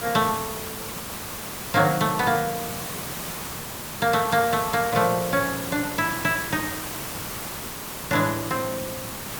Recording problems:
background hiss; slope -3 dB per octave, SNR 7 dB

